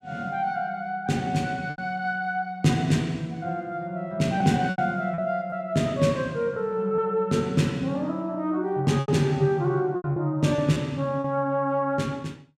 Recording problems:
lost packets; 5% of the sound replaced, filled with repeated pitch periods

